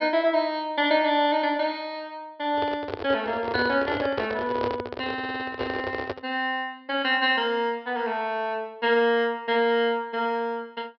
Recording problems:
low-pass filter; nothing above 5.5 kHz
microphone handling noise; from 2.5 to 6.5 s; peak +1 dB vs average level
audio stuttering; at 5 s

